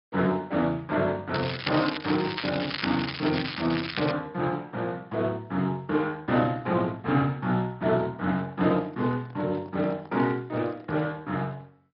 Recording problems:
low-pass filter; nothing above 5.3 kHz
lossy codec; Speex, log-spectral distance 6 dB
crackle; from 1.5 to 4 s; loose cable, SNR 6 dB
microphone handling noise; from 8.5 to 11 s; peak -13 dB vs average level

